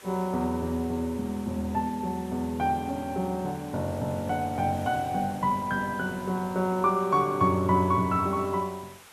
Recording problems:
background hiss; SNR 21 dB

